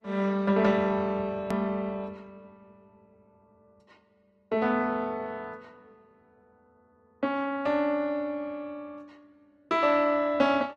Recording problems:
codec artefacts; Opus, log-spectral distance 2 dB, nothing above 13.1 kHz
click at an edit; at 1.5 s

